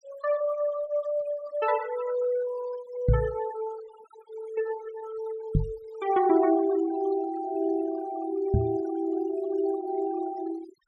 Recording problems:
denoising artefacts; signal-to-artefact ratio 17 dB
microphone thump; at 3 s, at 5.5 s and at 8.5 s; peak +9 dB vs average level

